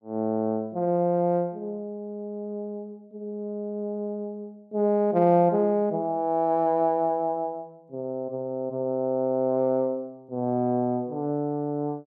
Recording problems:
none

